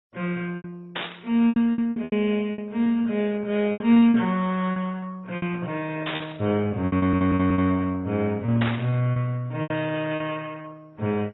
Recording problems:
lossy codec; AAC, then MP2, log-spectral distance 3 dB, nothing above 3.1 kHz
packet loss; 11% of the sound replaced, filled with repeated pitch periods
static burst; at 1 s, at 6 s and at 8.5 s; peak -1 dB vs average level
audio stuttering; at 7 s

